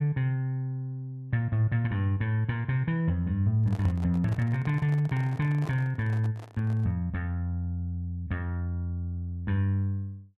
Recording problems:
handling noise; from 3.5 to 7 s; peak -9 dB vs average level

